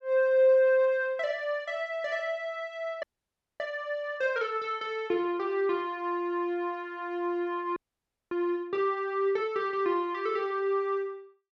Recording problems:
frozen audio; at 3 s for 0.5 s and at 8 s for 0.5 s

